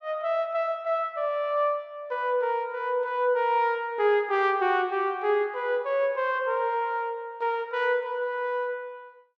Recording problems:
none

